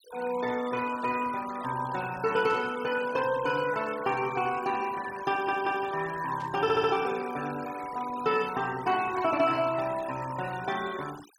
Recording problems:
denoising artefacts; signal-to-artefact ratio 15 dB
burst of static; at 2.5 s and at 6.5 s; peak -16 dB vs average level
audio stuttering; at 5.5 s and at 6.5 s

